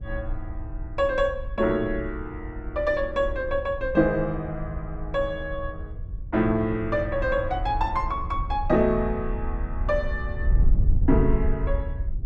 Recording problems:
wind noise; below 66 Hz, SNR 5 dB

